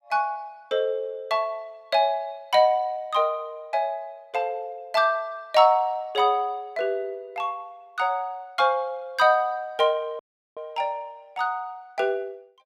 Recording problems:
audio cutting out; at 10 s

